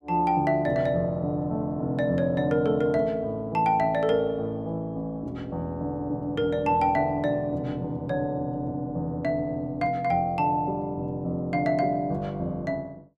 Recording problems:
none

